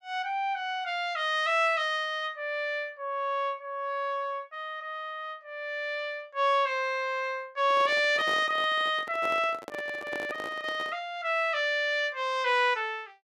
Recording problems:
microphone handling noise; from 7.5 to 11 s; peak -6 dB vs average level

